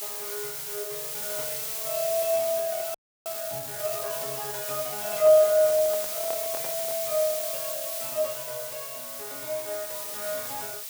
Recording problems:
background hiss; slope +3 dB per octave, SNR 3 dB
audio freezing; at 3 s
handling noise; from 5 to 7 s; peak -7 dB vs average level

